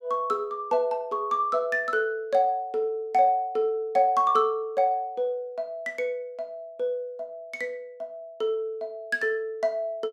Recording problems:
none

